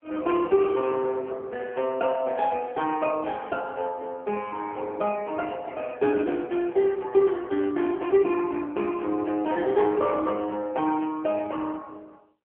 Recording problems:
telephone audio; 240 Hz to 3.3 kHz, AMR-NB

